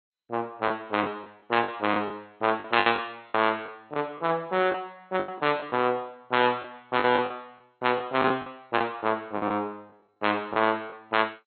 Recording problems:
lossy codec; MP2, log-spectral distance 3 dB, nothing above 4.1 kHz
packet loss; 10% of the sound replaced, filled with the last packet

